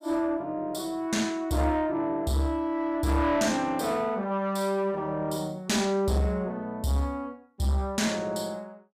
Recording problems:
distortion; soft clipping, signal-to-distortion ratio 11 dB

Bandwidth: 15 kHz